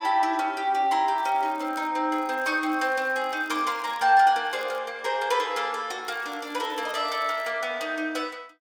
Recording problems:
crackle; 4 times, first at 1 s; loose cable, SNR 27 dB

